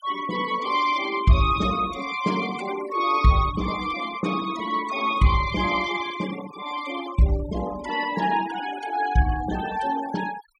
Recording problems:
denoising artefacts; signal-to-artefact ratio 14 dB

